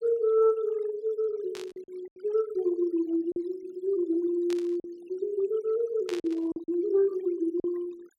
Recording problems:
noise reduction artefacts; signal-to-artefact ratio 26 dB
lost packets; 5% of the sound replaced, filled with silence
static burst; at 1.5 s, at 4.5 s and at 6 s; peak -8 dB vs average level

